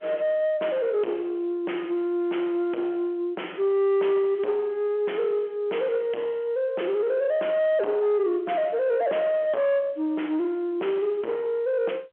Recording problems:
phone line; 260 Hz to 3.3 kHz, G.711
distortion; soft clipping, signal-to-distortion ratio 10 dB

